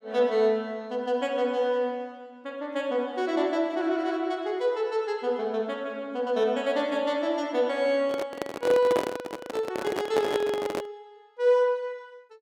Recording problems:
microphone handling noise; from 8 to 11 s; peak +3 dB vs average level

